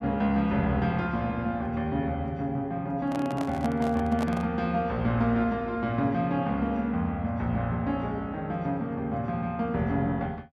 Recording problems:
microphone handling noise; from 3 to 4.5 s; peak -3 dB vs average level

